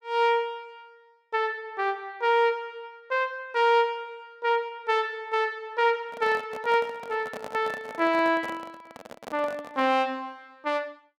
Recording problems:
handling noise; from 6 to 10 s; peak -8 dB vs average level

